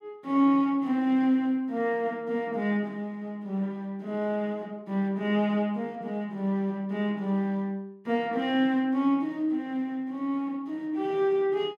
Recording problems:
none

